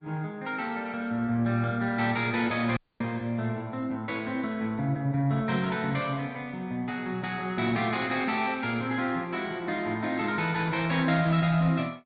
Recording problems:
treble missing; nothing above 4.5 kHz
codec artefacts; Opus, log-spectral distance 2 dB
dropout; at 3 s

